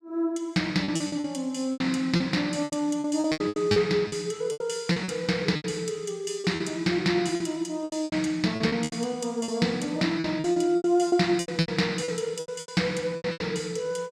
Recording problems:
lost packets; 15% of the sound replaced, filled with repeated pitch periods

